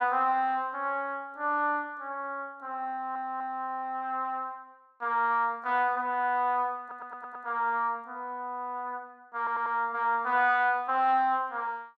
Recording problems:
audio stuttering; at 3 s, at 7 s and at 9.5 s

